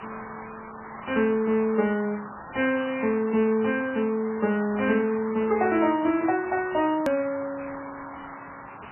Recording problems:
lossy compression; MP3, log-spectral distance 20 dB, nothing above 13.1 kHz
hiss; SNR 15 dB
click at an edit; at 7 s

